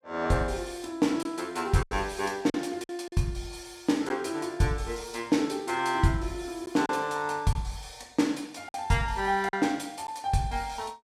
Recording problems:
lost packets; 4% of the sound replaced, filled with silence

